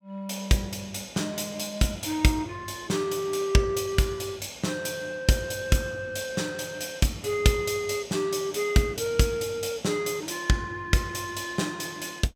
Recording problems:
none

